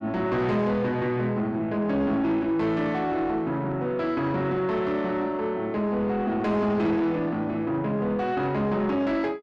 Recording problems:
distorted audio; soft clipping, signal-to-distortion ratio 11 dB

